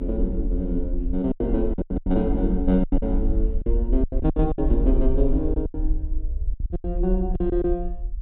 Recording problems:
low-pass filter; nothing above 4 kHz
low-frequency rumble; below 48 Hz, SNR 2 dB
lost packets; 12% of the sound replaced, filled with silence

